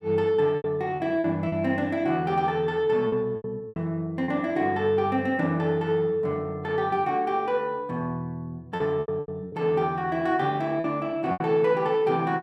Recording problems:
packet loss; 6% of the sound replaced, filled with repeated pitch periods

